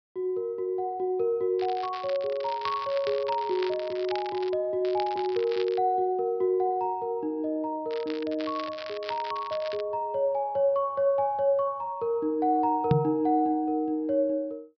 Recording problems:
treble cut off; nothing above 5.5 kHz
crackle; from 1.5 to 4.5 s, at 5 s and from 8 to 10 s; loose cable, SNR 15 dB
microphone thump; at 13 s; peak +8 dB vs average level

